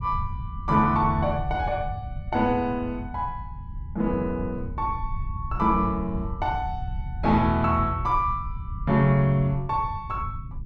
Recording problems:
low-frequency rumble; below 100 Hz, SNR 10 dB

